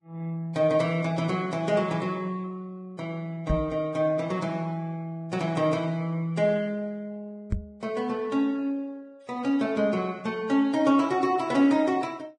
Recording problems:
codec artefacts; Vorbis, log-spectral distance 2 dB
microphone thump; at 3.5 s and at 7.5 s; peak +2 dB vs average level

